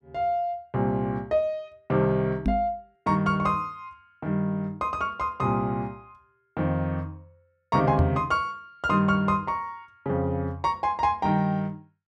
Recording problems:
microphone bump; at 2.5 s and at 8 s; peak +6 dB vs average level

